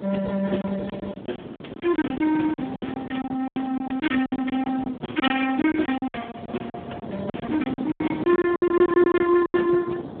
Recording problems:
telephone audio; 130 Hz to 3.4 kHz, Speex
wind noise; below 490 Hz, SNR 12 dB
packet loss; 16% of the sound replaced, filled with silence

